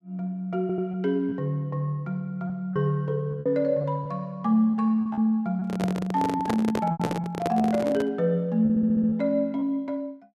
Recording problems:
packet loss; 6% of the sound replaced, filled with repeated pitch periods
stutter; at 0.5 s and at 8.5 s
handling noise; from 5.5 to 8 s; peak +1 dB vs average level

